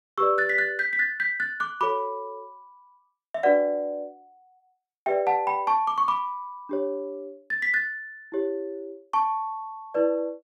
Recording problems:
none

